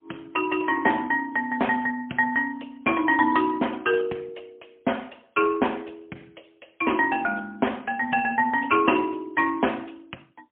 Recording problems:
telephone audio; 280 Hz to 3.3 kHz, AMR-NB, then MP3

